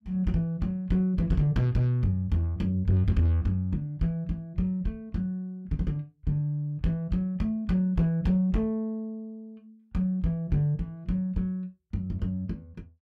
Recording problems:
distortion; soft clipping, signal-to-distortion ratio 11 dB

